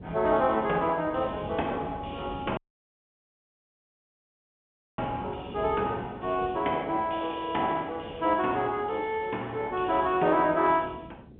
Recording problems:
telephone audio; 220 Hz to 3.5 kHz, G.711
wind on the microphone; below 320 Hz, SNR 16 dB
audio cutting out; at 2.5 s for 2.5 s

